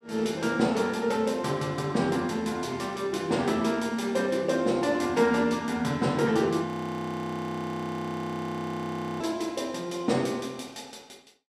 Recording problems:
audio freezing; at 6.5 s for 2.5 s

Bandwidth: 14.5 kHz